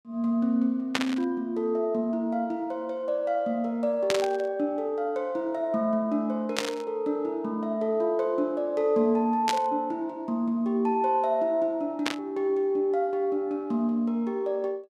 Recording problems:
burst of static; 5 times, first at 1 s; peak +5 dB vs average level

